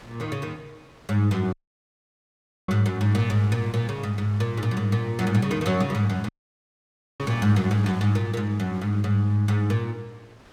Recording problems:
wind on the microphone; below 2 kHz, SNR 22 dB
audio cutting out; at 1.5 s for 1 s and at 6.5 s for 1 s

